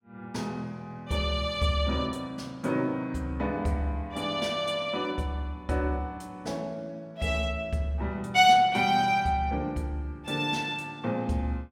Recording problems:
none

